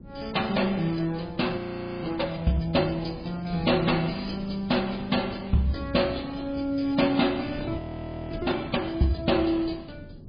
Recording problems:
lossy codec; MP3, log-spectral distance 6 dB, nothing above 4.1 kHz
wind noise; below 230 Hz, SNR 15 dB
audio freezing; at 1.5 s and at 8 s for 0.5 s

